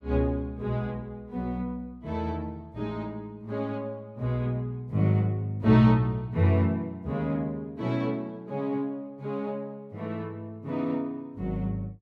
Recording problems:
none

